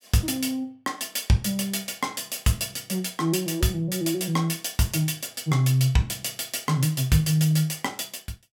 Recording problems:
none

